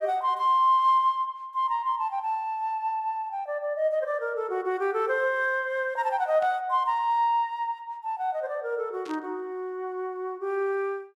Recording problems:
burst of static; at 6.5 s and at 9 s; peak -15 dB vs average level

